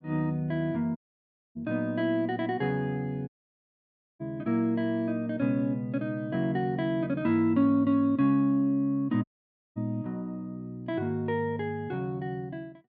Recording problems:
audio cutting out; at 1 s for 0.5 s, at 3.5 s for 1 s and at 9 s for 0.5 s

